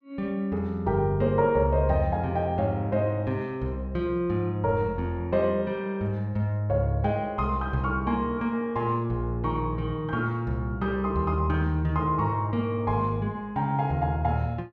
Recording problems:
none

